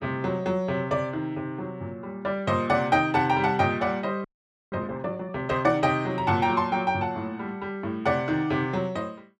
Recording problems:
audio freezing; at 4 s

